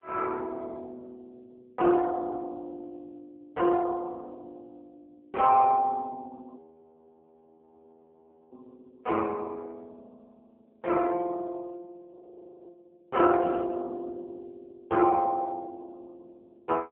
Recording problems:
phone line; 240 Hz to 3.2 kHz, AMR-NB
audio freezing; at 6.5 s for 2 s and at 12 s for 0.5 s
static burst; at 13 s; peak -17 dB vs average level

